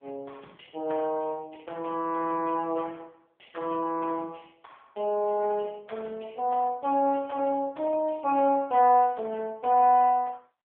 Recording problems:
phone line; 220 Hz to 2 kHz, AMR-NB

